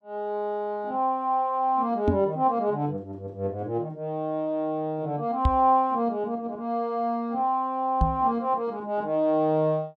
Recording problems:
knock on the microphone; at 2 s, at 5.5 s and at 8 s; peak +6 dB vs average level

